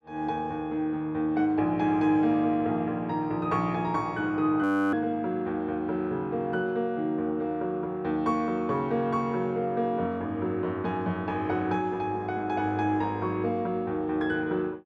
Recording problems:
audio freezing; at 4.5 s

